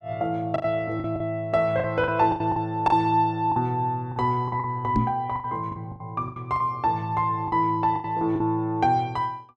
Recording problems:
lost packets; 11% of the sound replaced, filled with the last packet
microphone bump; at 5 s; peak +5 dB vs average level

